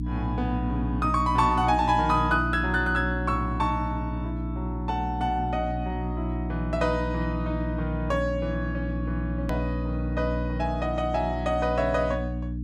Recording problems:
hum; 60 Hz, harmonics up to 300 Hz, SNR 3 dB
hard cut with a click; at 9.5 s

